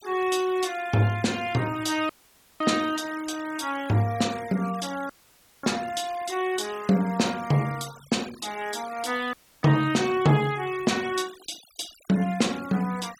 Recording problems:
noise reduction artefacts; signal-to-artefact ratio 18 dB
dropout; at 2 s for 0.5 s, at 5 s for 0.5 s and at 9.5 s

